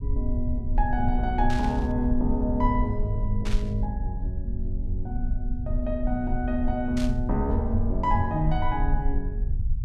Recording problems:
rumble; below 56 Hz, SNR 2 dB
static burst; at 1.5 s, at 3.5 s and at 7 s; peak -6 dB vs average level

